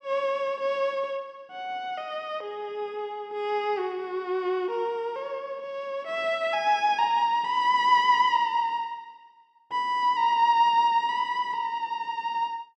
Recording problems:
none

